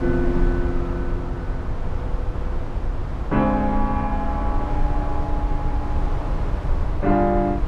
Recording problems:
rumble; below 80 Hz, SNR 2 dB

